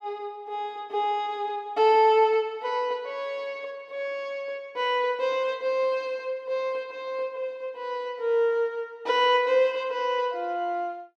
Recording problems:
none

